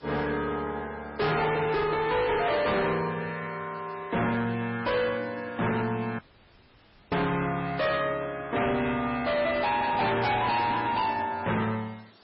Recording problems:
codec artefacts; MP3, log-spectral distance 9 dB, nothing above 5 kHz
distortion; hard clipping, signal-to-distortion ratio 7 dB
background hiss; SNR 28 dB
audio cutting out; at 6 s for 1 s
handling noise; from 9.5 to 11 s; peak -5 dB vs average level

